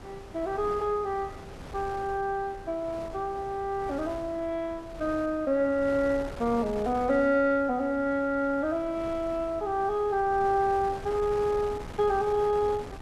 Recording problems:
wind on the microphone; below 850 Hz, SNR 15 dB

